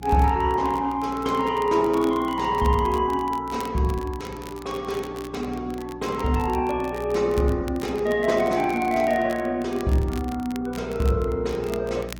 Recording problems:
codec artefacts; Opus, log-spectral distance 2 dB
electrical hum; 60 Hz, harmonics up to 360 Hz, SNR 18 dB
crackling; vinyl, SNR 21 dB

